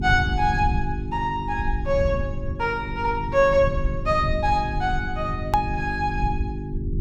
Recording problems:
electrical hum; 50 Hz, harmonics up to 400 Hz, SNR 9 dB
rumble; below 110 Hz, SNR 6 dB
edit click; at 5.5 s

